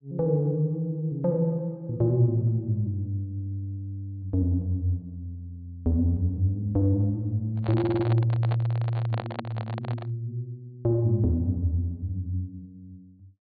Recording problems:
treble missing; nothing above 4.5 kHz
microphone handling noise; from 7.5 to 10 s; peak -3 dB vs average level
stutter; at 8 s

